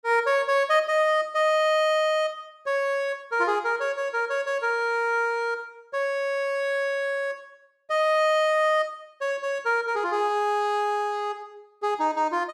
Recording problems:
none

